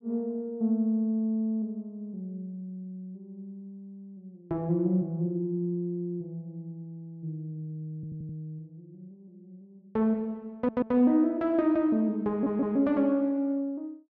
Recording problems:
audio stuttering; at 8 s, at 11 s and at 12 s

